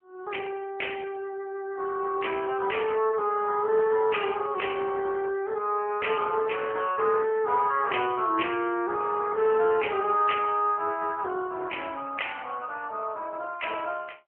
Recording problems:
telephone audio; 280 Hz to 3.2 kHz, AMR-NB

